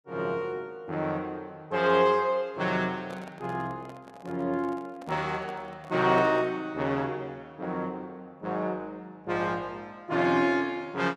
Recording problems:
microphone handling noise; from 3 to 6.5 s; peak -11 dB vs average level

